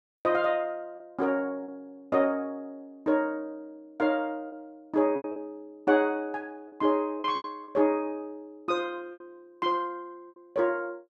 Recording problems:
packet loss; 6% of the sound replaced, filled with repeated pitch periods

